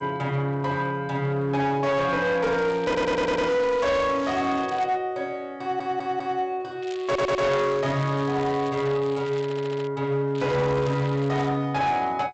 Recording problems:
lossy compression; G.722, log-spectral distance 3 dB, nothing above 7.3 kHz
distorted audio; hard clipping, uneven, signal-to-distortion ratio 10 dB
crackling; from 2.5 to 5 s, from 7 to 10 s and from 10 to 11 s; loose cable, SNR 19 dB
audio stuttering; 4 times, first at 3 s

